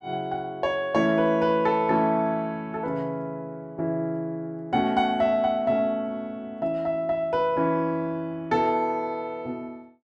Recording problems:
none

